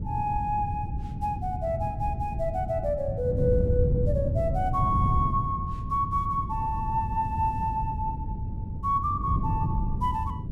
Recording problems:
wind on the microphone; below 140 Hz, SNR 2 dB

